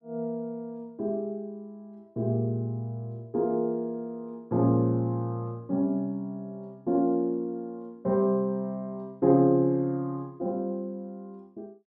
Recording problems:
none

